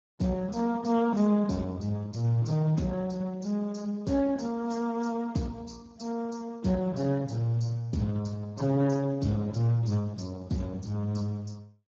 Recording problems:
lossy compression; AAC, then Speex, log-spectral distance 3 dB

